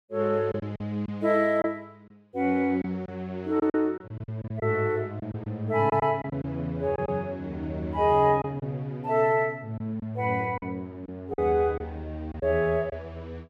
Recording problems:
lost packets; 6% of the sound replaced, filled with silence

